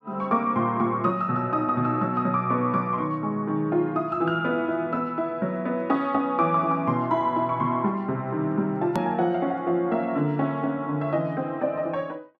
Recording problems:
click at an edit; at 9 s

